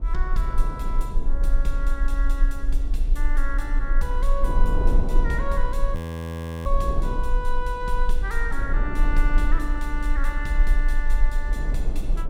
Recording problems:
rumble; below 38 Hz, strongest tone 22 Hz, SNR -5 dB
wind on the microphone; below 320 Hz, SNR 4 dB
audio freezing; at 6 s for 0.5 s

